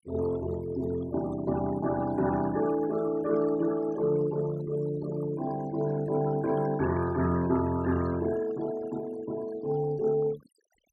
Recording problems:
denoising artefacts; signal-to-artefact ratio 16 dB

